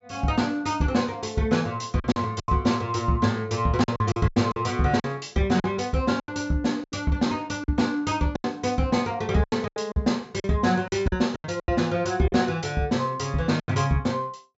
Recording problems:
treble cut off; nothing above 8 kHz
packet loss; 10% of the sound replaced, filled with silence

